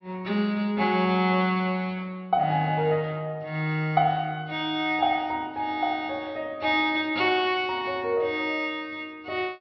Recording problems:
treble missing; nothing above 5.5 kHz

